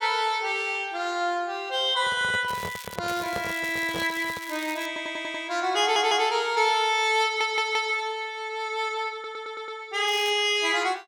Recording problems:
handling noise; from 2 to 4.5 s; peak -3 dB vs average level
crackling; at 2.5 s, from 3 to 5 s and at 10 s; loose cable, SNR 16 dB
audio stuttering; 4 times, first at 5 s

